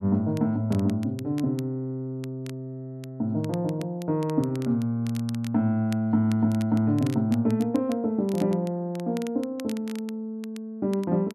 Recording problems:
crackle; vinyl, SNR 22 dB

